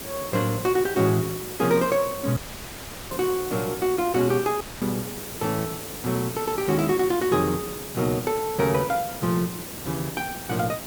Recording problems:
background hiss; slope -4 dB per octave, SNR 9 dB
dropout; at 2.5 s for 0.5 s and at 4.5 s

